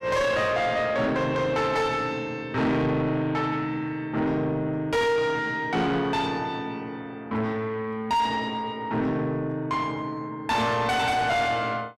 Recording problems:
distortion; soft clipping, signal-to-distortion ratio 7 dB

